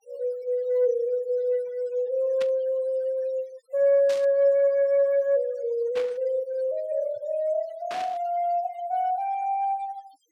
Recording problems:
denoising artefacts; signal-to-artefact ratio 26 dB
burst of static; 4 times, first at 2.5 s; peak -9 dB vs average level

